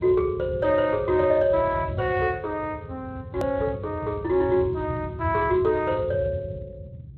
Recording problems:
codec artefacts; Speex, log-spectral distance 2 dB, nothing above 13.1 kHz
rumble; below 140 Hz, SNR 11 dB
click at an edit; at 3.5 s

